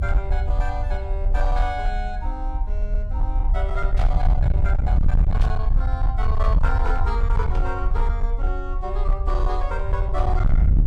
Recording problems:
distortion; hard clipping, signal-to-distortion ratio 8 dB
hum; 60 Hz, harmonics up to 540 Hz, SNR 19 dB
rumble; below 62 Hz, strongest tone 32 Hz, SNR -7 dB
static burst; at 4 s, at 5.5 s and at 7.5 s; peak -5 dB vs average level

